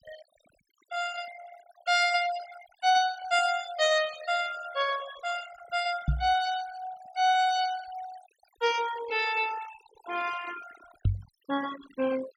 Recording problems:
noise reduction artefacts; signal-to-artefact ratio 15 dB
microphone thump; at 6 s and at 11 s; peak +5 dB vs average level

